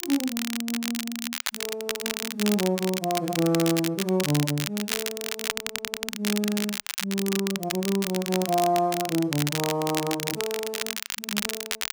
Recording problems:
crackle; vinyl, SNR 3 dB
stutter; at 5.5 s

